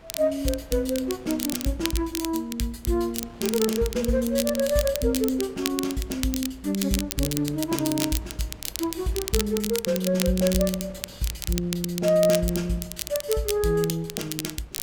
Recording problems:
wind on the microphone; below 810 Hz, SNR 22 dB
crackle; vinyl, SNR 7 dB

